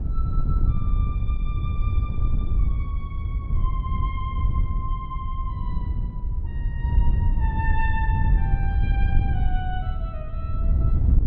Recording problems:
wind on the microphone; below 86 Hz, SNR -11 dB

